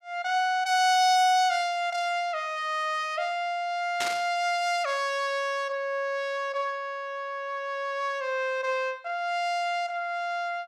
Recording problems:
static burst; at 4 s; peak 0 dB vs average level

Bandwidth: 15 kHz